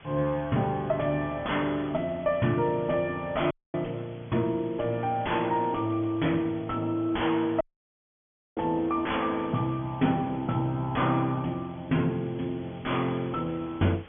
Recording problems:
treble missing; nothing above 3.4 kHz
distortion; soft clipping, signal-to-distortion ratio 6 dB
background hiss; SNR 22 dB
dropout; at 3.5 s and at 7.5 s for 1 s

